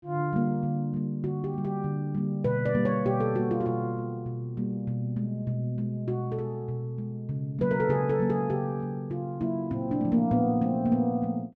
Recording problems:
none

